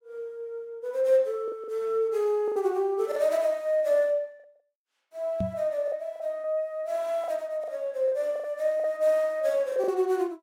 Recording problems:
packet loss; 7% of the sound replaced, filled with the last packet
microphone thump; at 5.5 s; peak 0 dB vs average level

